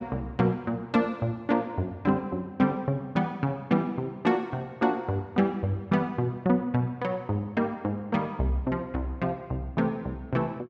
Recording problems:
none

